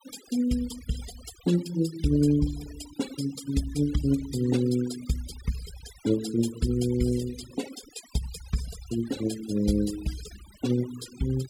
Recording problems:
denoising artefacts; signal-to-artefact ratio 14 dB

